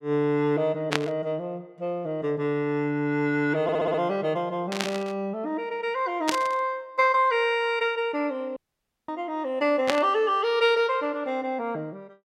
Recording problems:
burst of static; 4 times, first at 1 s; peak +4 dB vs average level
stutter; at 3.5 s
dropout; at 8.5 s for 0.5 s

